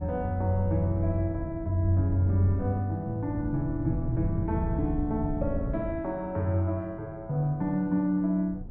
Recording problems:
wind on the microphone; below 120 Hz, SNR 8 dB

